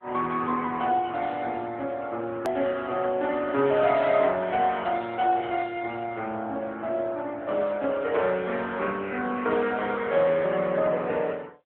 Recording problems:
telephone audio; 190 Hz to 3.7 kHz, AMR-NB
hard cut with a click; at 2.5 s

